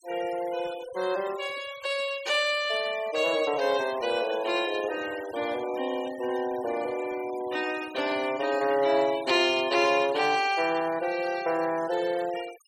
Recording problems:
denoising artefacts; signal-to-artefact ratio 17 dB

